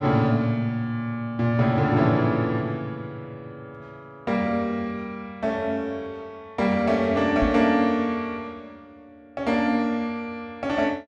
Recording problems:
knock on the microphone; at 7.5 s; peak 0 dB vs average level

